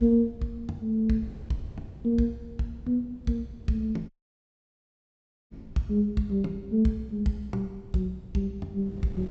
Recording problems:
low-pass filter; nothing above 7.8 kHz
wind noise; below 160 Hz, SNR 18 dB
audio cutting out; at 4 s for 1.5 s

